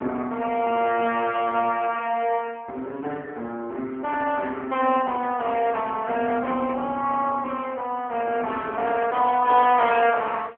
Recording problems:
telephone audio; 300 Hz to 3.2 kHz, AMR-NB

